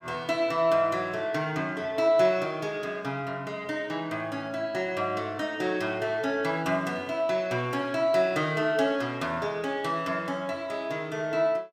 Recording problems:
none

